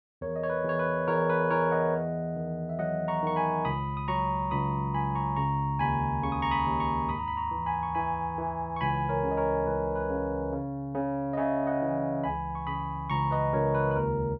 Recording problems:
treble missing; nothing above 7.8 kHz

